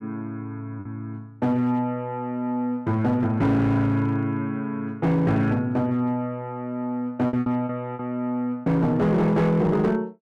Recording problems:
distorted audio; hard clipping, signal-to-distortion ratio 12 dB
packet loss; 3% of the sound replaced, filled with repeated pitch periods

